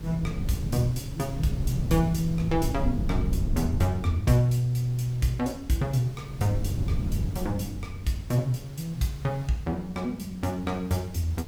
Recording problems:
hiss; slope -4 dB per octave, SNR 22 dB
wind on the microphone; below 150 Hz, SNR 4 dB

